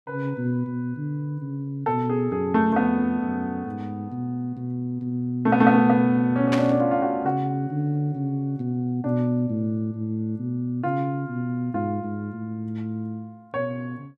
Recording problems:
static burst; at 6.5 s; peak +1 dB vs average level

